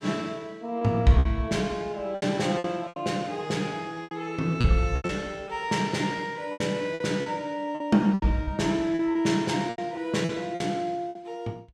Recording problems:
packet loss; 11% of the sound replaced, filled with repeated pitch periods

